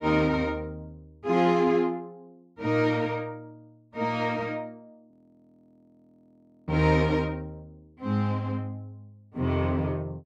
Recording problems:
frozen audio; at 5 s for 1.5 s

